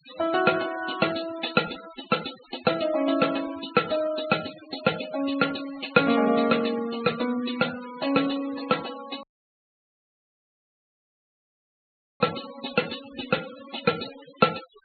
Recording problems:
treble missing; nothing above 4.3 kHz
denoising artefacts; signal-to-artefact ratio 14 dB
audio cutting out; at 9 s for 3 s

